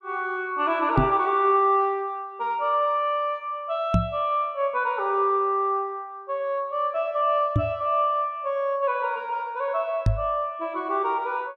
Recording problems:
knock on the microphone; 4 times, first at 1 s; peak +6 dB vs average level

